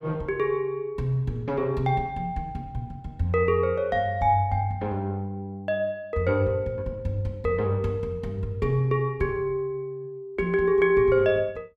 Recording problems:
none

